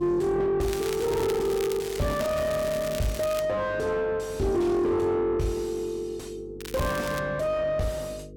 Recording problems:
distortion; soft clipping, signal-to-distortion ratio 6 dB
hum; 50 Hz, harmonics up to 500 Hz, SNR 18 dB
crackling; from 0.5 to 3.5 s and at 6.5 s; loose cable, SNR 12 dB

